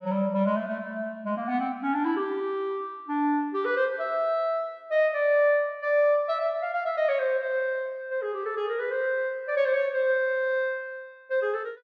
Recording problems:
none

